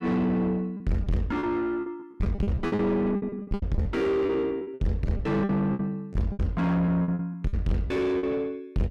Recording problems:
distortion; soft clipping, signal-to-distortion ratio 5 dB
packet loss; 16% of the sound replaced, filled with repeated pitch periods

